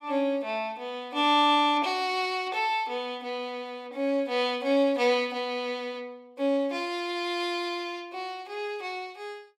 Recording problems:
none

